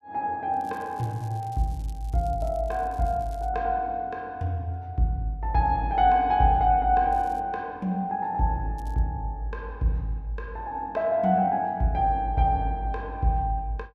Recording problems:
crackle; from 0.5 to 3.5 s, at 7 s and at 9 s; loose cable, SNR 30 dB

